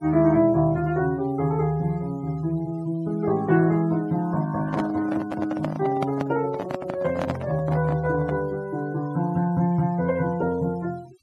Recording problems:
denoising artefacts; signal-to-artefact ratio 22 dB
handling noise; from 4.5 to 8.5 s; peak 0 dB vs average level

